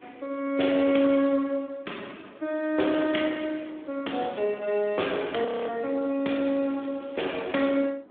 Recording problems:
phone line; 220 Hz to 3.6 kHz, Speex
wind noise; below 630 Hz, SNR 23 dB
frozen audio; at 5.5 s
crackle; at 6.5 s; loose cable, SNR 25 dB

